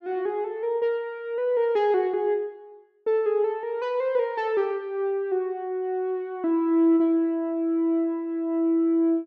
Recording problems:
none

